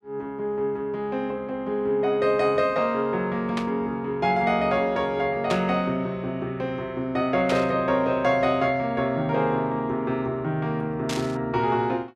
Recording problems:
burst of static; 4 times, first at 3.5 s; peak -1 dB vs average level

